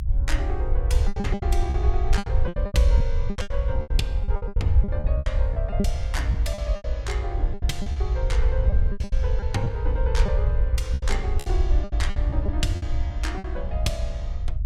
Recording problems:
rumble; below 68 Hz, SNR -7 dB
packet loss; 15% of the sound replaced, filled with repeated pitch periods

